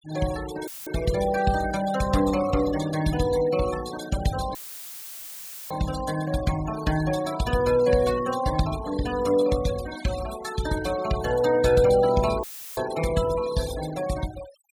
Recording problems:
noise reduction artefacts; signal-to-artefact ratio 14 dB
audio cutting out; at 0.5 s, at 4.5 s for 1 s and at 12 s; filled with static

